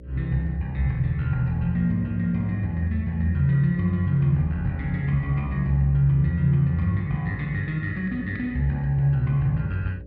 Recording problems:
hum; 60 Hz, harmonics up to 600 Hz, SNR 18 dB

